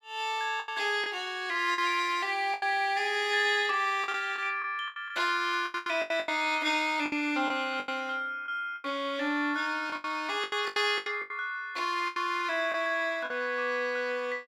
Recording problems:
lost packets; 11% of the sound replaced, filled with the last packet

